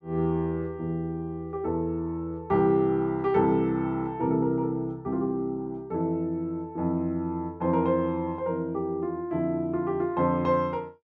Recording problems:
none

